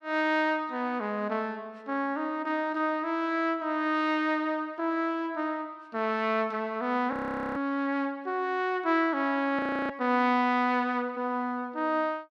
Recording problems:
audio freezing; at 7 s and at 9.5 s

